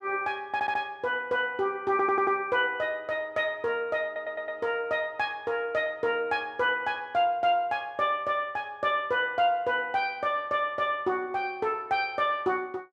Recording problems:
audio stuttering; at 0.5 s, at 2 s and at 4 s

